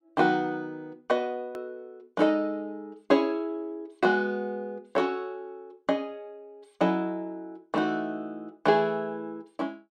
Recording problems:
hard cut with a click; at 1.5 s

